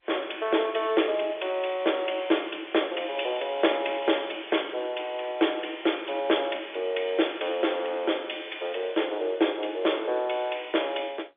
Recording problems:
phone line; 280 Hz to 3.6 kHz, G.711

